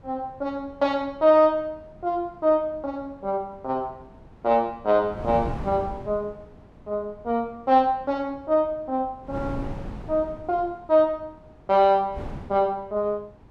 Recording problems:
wind noise; below 340 Hz, SNR 17 dB

